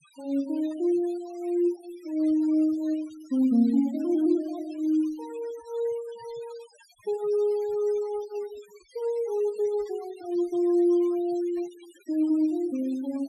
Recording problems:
denoising artefacts; signal-to-artefact ratio 25 dB

